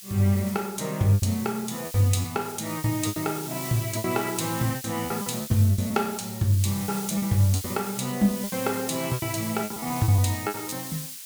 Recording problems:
background hiss; SNR 9 dB
lost packets; 12% of the sound replaced, filled with repeated pitch periods

